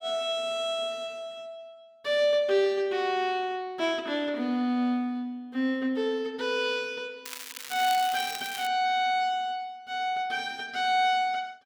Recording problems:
crackle; from 7.5 to 8.5 s; loose cable, SNR 10 dB

